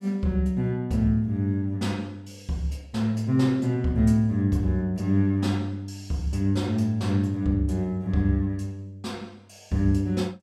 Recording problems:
none

